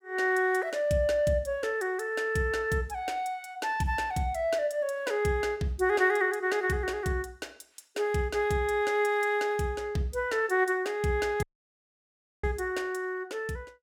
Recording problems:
audio cutting out; at 11 s for 1 s

